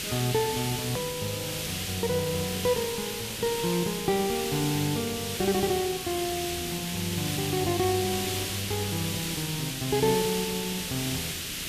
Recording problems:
background hiss; SNR 2 dB
click at an edit; at 1 s

